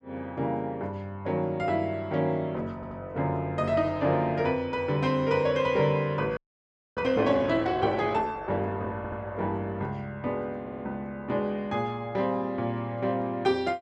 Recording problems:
stutter; at 3 s, at 9 s and at 11 s
audio freezing; at 6.5 s for 0.5 s

